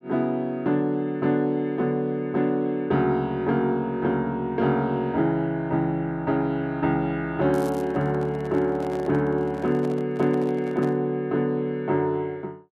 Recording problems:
microphone handling noise; from 7.5 to 11 s; peak -11 dB vs average level
crackling; at 7.5 s; loose cable, SNR 24 dB

